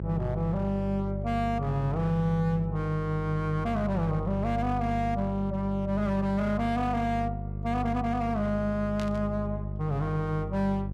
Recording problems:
distortion; hard clipping, signal-to-distortion ratio 10 dB
electrical hum; 50 Hz, harmonics up to 600 Hz, SNR 5 dB
burst of static; at 9 s; peak -8 dB vs average level

